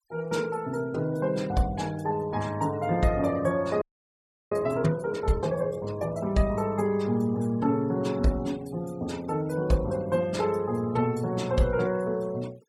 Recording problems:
denoising artefacts; signal-to-artefact ratio 23 dB
audio freezing; at 4 s for 0.5 s

